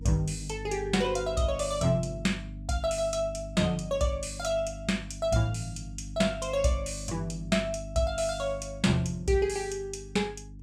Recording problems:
hum; 50 Hz, harmonics up to 300 Hz, SNR 12 dB

